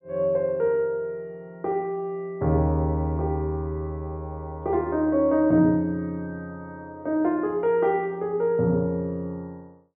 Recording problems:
low-pass filter; nothing above 3.7 kHz

